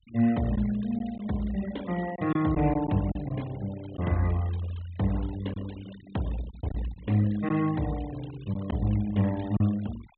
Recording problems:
treble cut off; nothing above 4 kHz
noise reduction artefacts; signal-to-artefact ratio 19 dB
lost packets; 3% of the sound replaced, filled with silence

